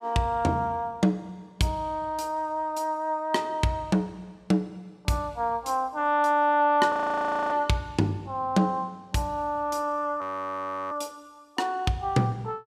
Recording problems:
frozen audio; at 7 s for 0.5 s and at 10 s for 0.5 s

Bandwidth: 15 kHz